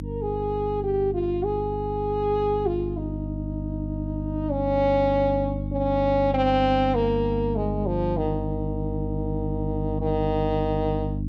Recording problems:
mains hum; 50 Hz, harmonics up to 300 Hz, SNR 5 dB

